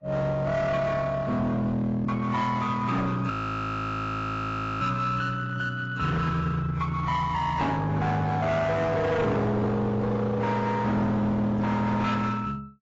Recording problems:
lossy codec; AAC, then AAC, log-spectral distance 2 dB, nothing above 6.5 kHz
distorted audio; hard clipping, uneven, signal-to-distortion ratio 7 dB
audio freezing; at 3.5 s for 1.5 s

